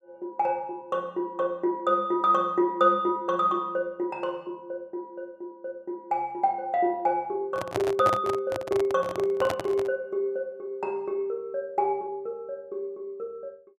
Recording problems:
microphone handling noise; from 7.5 to 10 s; peak +2 dB vs average level

